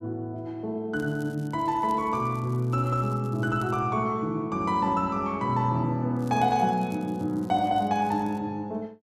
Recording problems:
crackle; from 1 to 4 s and from 6 to 8.5 s; loose cable, SNR 29 dB

